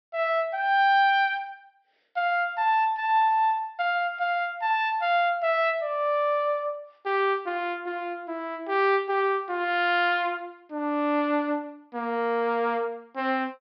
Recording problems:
treble cut off; nothing above 5.5 kHz

